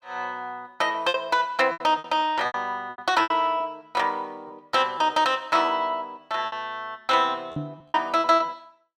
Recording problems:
packet loss; 11% of the sound replaced, filled with repeated pitch periods
microphone thump; at 7.5 s; peak -3 dB vs average level

